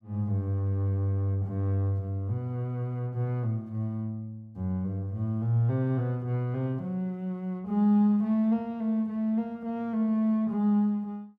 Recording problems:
none

